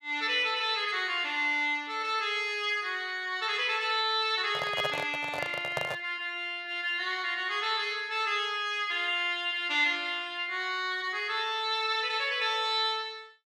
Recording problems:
handling noise; from 4.5 to 6 s; peak 0 dB vs average level

